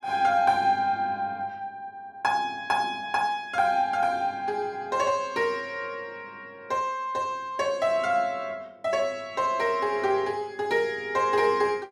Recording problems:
none

